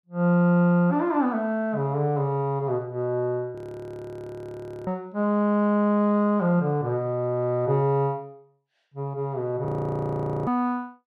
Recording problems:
frozen audio; at 3.5 s for 1.5 s and at 9.5 s for 1 s

